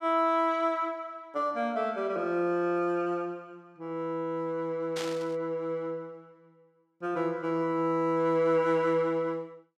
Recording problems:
static burst; at 5 s; peak -5 dB vs average level

